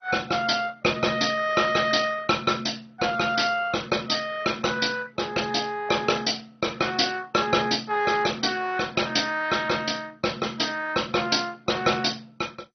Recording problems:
lossy codec; MP2, log-spectral distance 7 dB, nothing above 6 kHz

